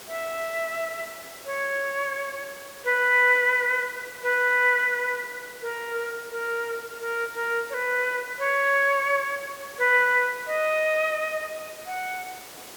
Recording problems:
background hiss; slope -3 dB per octave, SNR 18 dB

